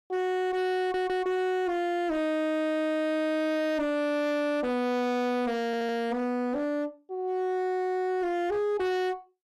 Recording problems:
distorted audio; hard clipping, signal-to-distortion ratio 6 dB
audio stuttering; at 1 s and at 5.5 s

